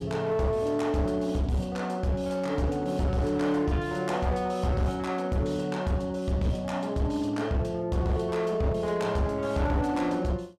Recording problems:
distortion; hard clipping, uneven, signal-to-distortion ratio 10 dB

